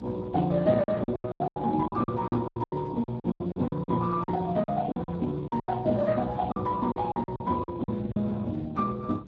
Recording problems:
lossy compression; Speex, log-spectral distance 3 dB
electrical hum; 60 Hz, harmonics up to 420 Hz, SNR 20 dB
wind on the microphone; below 240 Hz, SNR 15 dB
packet loss; 16% of the sound replaced, filled with silence

